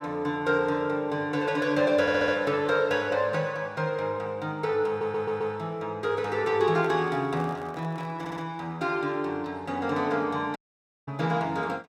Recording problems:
stutter; at 2 s, at 5 s and at 8 s
handling noise; from 6.5 to 8.5 s; peak -10 dB vs average level
dropout; at 11 s for 0.5 s

